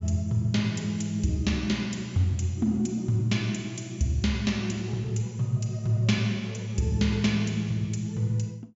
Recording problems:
low-pass filter; nothing above 8 kHz

